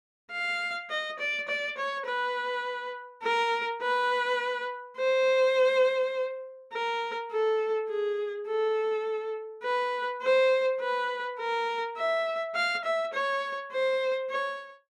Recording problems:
none

